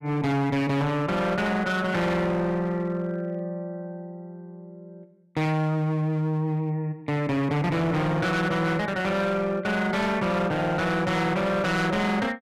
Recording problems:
distortion; hard clipping, uneven, signal-to-distortion ratio 8 dB

